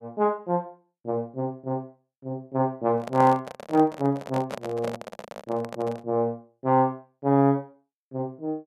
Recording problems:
handling noise; from 3 to 6 s; peak -3 dB vs average level

